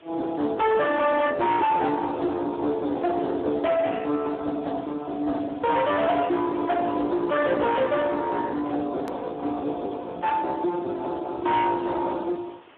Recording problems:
phone line; 220 Hz to 3.6 kHz, Speex
distorted audio; hard clipping, uneven, signal-to-distortion ratio 6 dB
background hiss; SNR 28 dB
click at an edit; at 9 s

